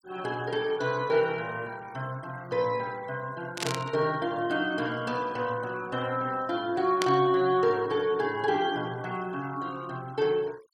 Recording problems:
denoising artefacts; signal-to-artefact ratio 24 dB
static burst; at 3.5 s and at 7 s; peak +3 dB vs average level

